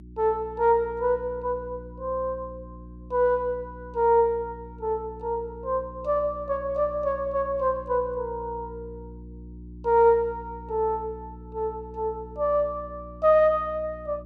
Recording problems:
hum; 60 Hz, harmonics up to 360 Hz, SNR 17 dB

